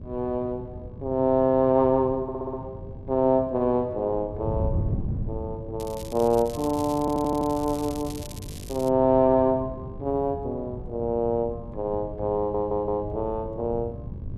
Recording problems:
electrical hum; 50 Hz, harmonics up to 1.3 kHz, SNR 24 dB
wind on the microphone; below 160 Hz, SNR 12 dB
stutter; at 2 s, at 7 s and at 12 s
crackle; from 6 to 9 s; loose cable, SNR 18 dB

